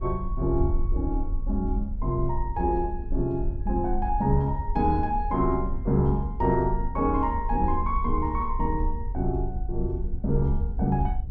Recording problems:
wind on the microphone; below 58 Hz, SNR 5 dB

